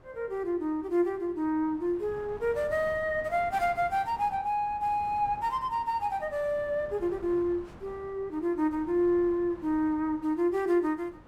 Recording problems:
wind on the microphone; below 730 Hz, SNR 21 dB

